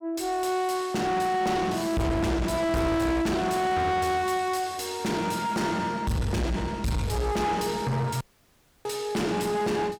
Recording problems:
distortion; soft clipping, signal-to-distortion ratio 6 dB
dropout; at 8 s for 0.5 s

